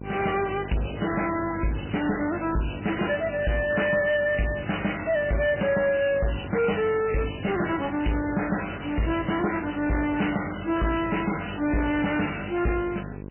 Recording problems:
lossy compression; MP3, log-spectral distance 11 dB, nothing above 2.8 kHz
distortion; soft clipping, signal-to-distortion ratio 7 dB
hum; 50 Hz, harmonics up to 1.1 kHz, SNR 14 dB

